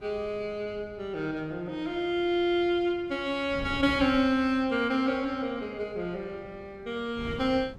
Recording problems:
wind noise; below 270 Hz, SNR 18 dB

